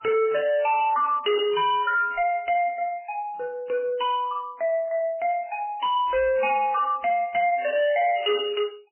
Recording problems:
lossy compression; MP3, log-spectral distance 3 dB, nothing above 2.5 kHz
distorted audio; soft clipping, signal-to-distortion ratio 5 dB

